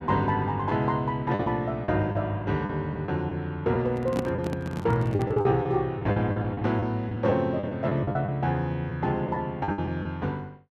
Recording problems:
packet loss; 9% of the sound replaced, filled with the last packet
handling noise; from 4 to 5.5 s; peak +2 dB vs average level

